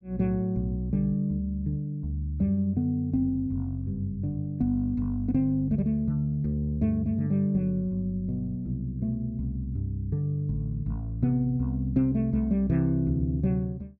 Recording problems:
none

